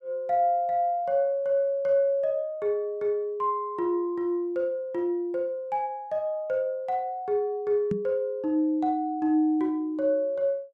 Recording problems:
microphone bump; at 8 s; peak 0 dB vs average level

